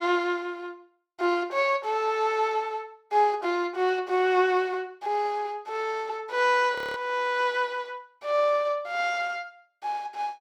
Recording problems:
frozen audio; at 7 s

